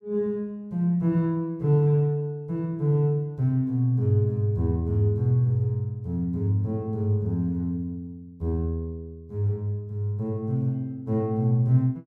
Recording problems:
none

